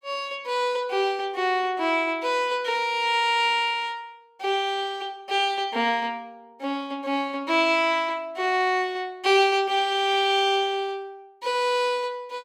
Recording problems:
none

